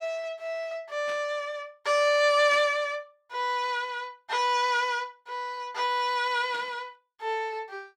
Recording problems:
burst of static; at 1 s, at 2.5 s and at 6.5 s; peak -10 dB vs average level

